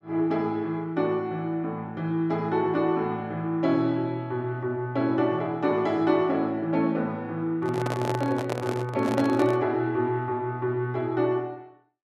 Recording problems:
microphone handling noise; from 7.5 to 9.5 s; peak 0 dB vs average level

